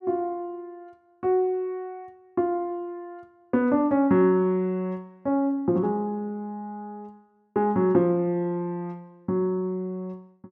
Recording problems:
none

